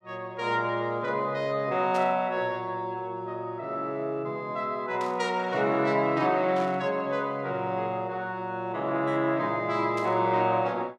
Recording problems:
static burst; 4 times, first at 2 s; peak -11 dB vs average level

